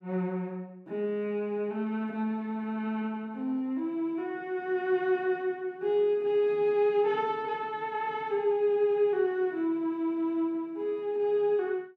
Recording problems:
none

